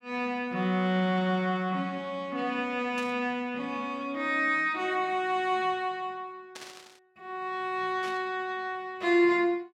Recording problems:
static burst; at 3 s, at 6.5 s and at 8 s; peak -10 dB vs average level

